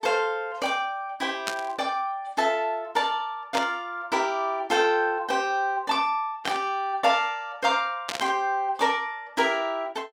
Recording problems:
static burst; 4 times, first at 1.5 s; peak +1 dB vs average level

